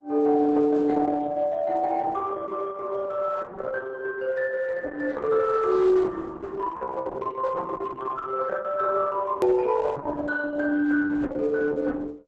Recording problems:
lossy compression; Opus, log-spectral distance 3 dB, nothing above 13.1 kHz
edit click; at 9.5 s

